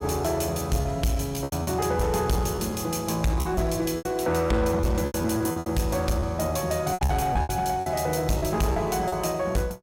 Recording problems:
distorted audio; soft clipping, signal-to-distortion ratio 10 dB
lost packets; 10% of the sound replaced, filled with repeated pitch periods

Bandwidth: 16.5 kHz